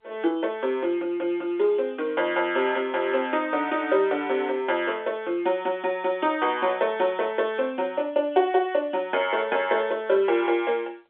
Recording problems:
telephone audio; 300 Hz to 3.6 kHz, G.711

